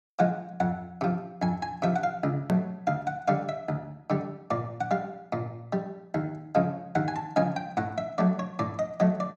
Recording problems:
edit click; at 2.5 s

